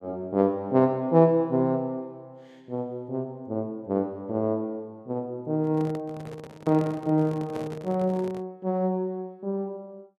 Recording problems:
handling noise; from 5.5 to 8.5 s; peak -7 dB vs average level

